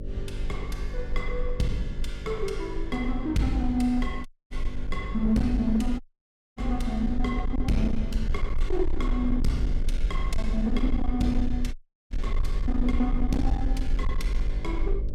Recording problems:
distortion; hard clipping, signal-to-distortion ratio 11 dB
hum; 50 Hz, harmonics up to 600 Hz, SNR 9 dB
rumble; below 42 Hz, strongest tone 20 Hz, SNR 3 dB
audio cutting out; at 4.5 s, at 6 s for 0.5 s and at 12 s

